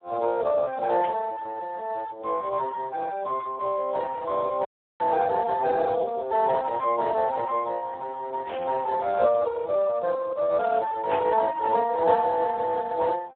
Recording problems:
telephone audio; 320 Hz to 2.3 kHz, Speex
burst of static; at 1 s, at 8.5 s and at 11 s; peak -8 dB vs average level
dropout; at 4.5 s

